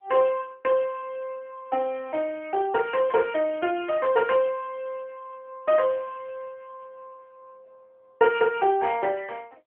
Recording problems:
telephone audio; 280 Hz to 3.2 kHz, AMR-NB

